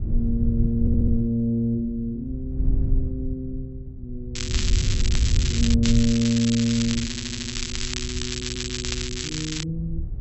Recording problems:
treble cut off; nothing above 7.8 kHz
wind on the microphone; below 86 Hz, SNR 2 dB
audio stuttering; at 1 s, at 7 s and at 8.5 s
crackling; from 4.5 to 6 s and from 6 to 9.5 s; loose cable, SNR 3 dB

